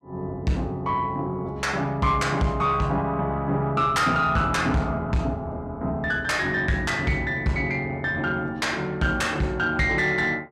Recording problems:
distortion; soft clipping, signal-to-distortion ratio 12 dB

